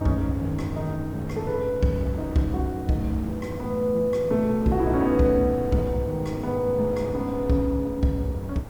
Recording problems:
hiss; slope +1 dB per octave, SNR 29 dB
wind on the microphone; below 460 Hz, SNR 14 dB

